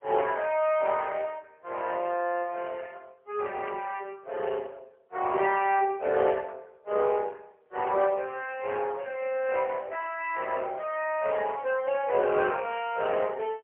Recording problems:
phone line; 340 Hz to 3.1 kHz, AMR-NB, then MP3

